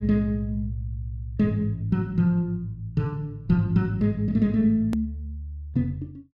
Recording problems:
hard cut with a click; at 5 s

